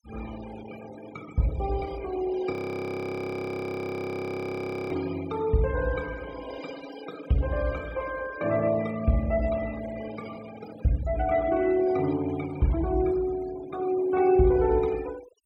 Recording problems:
noise reduction artefacts; signal-to-artefact ratio 18 dB
audio freezing; at 2.5 s for 2.5 s

